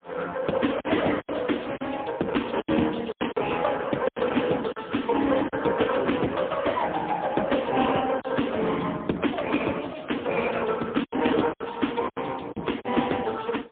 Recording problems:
telephone audio; 130 Hz to 3.6 kHz, AMR-NB, then MP3
lost packets; 6% of the sound replaced, filled with silence

